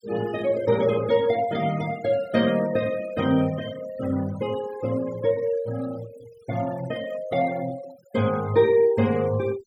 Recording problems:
denoising artefacts; signal-to-artefact ratio 18 dB

